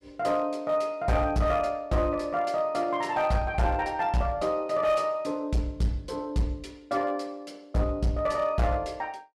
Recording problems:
distortion; hard clipping, uneven, signal-to-distortion ratio 10 dB

